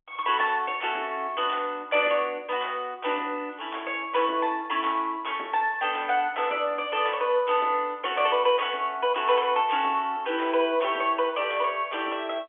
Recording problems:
phone line; 240 Hz to 3.5 kHz, G.711

